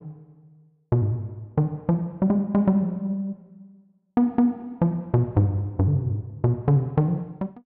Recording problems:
none

